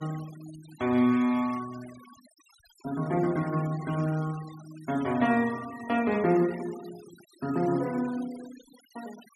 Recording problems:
noise reduction artefacts; signal-to-artefact ratio 19 dB

